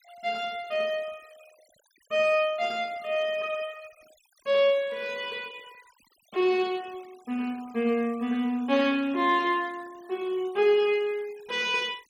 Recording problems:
denoising artefacts; signal-to-artefact ratio 25 dB

